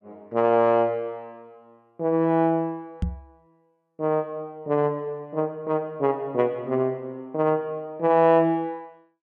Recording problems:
knock on the microphone; at 3 s; peak +1 dB vs average level

